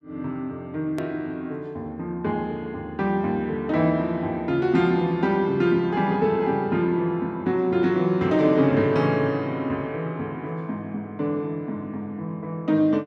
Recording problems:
click at an edit; at 1 s

